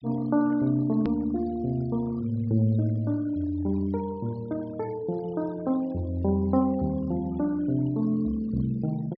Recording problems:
treble missing; nothing above 5.5 kHz
noise reduction artefacts; signal-to-artefact ratio 25 dB
hard cut with a click; at 1 s

